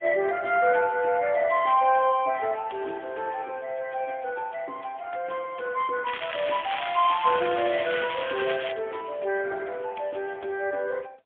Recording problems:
phone line; 280 Hz to 3.4 kHz, AMR-NB, then MP3
crackling; from 6 to 8.5 s; loose cable, SNR 8 dB

